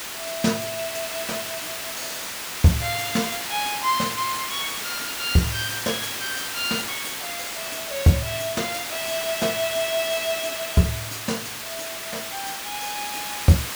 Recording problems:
hiss; slope 0 dB per octave, SNR 3 dB

